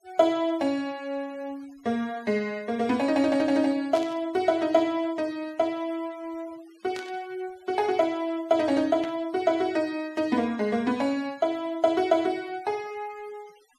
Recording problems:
denoising artefacts; signal-to-artefact ratio 26 dB
static burst; at 4 s, at 7 s and at 9 s; peak -10 dB vs average level

